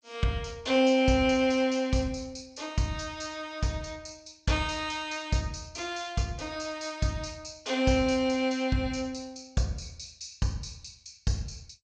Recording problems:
lossy codec; MP2, log-spectral distance 6 dB, nothing above 7.3 kHz

